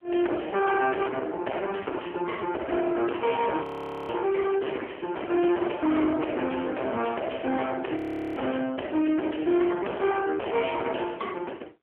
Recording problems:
telephone audio; 240 Hz to 3.2 kHz, AMR-NB
distortion; soft clipping, signal-to-distortion ratio 8 dB
frozen audio; at 3.5 s and at 8 s

